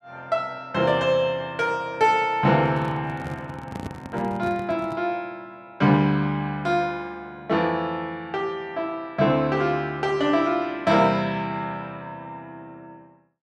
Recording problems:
handling noise; from 2.5 to 5 s; peak -6 dB vs average level

